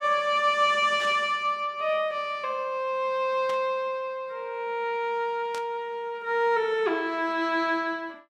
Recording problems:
burst of static; at 1 s, at 3.5 s and at 5.5 s; peak -9 dB vs average level

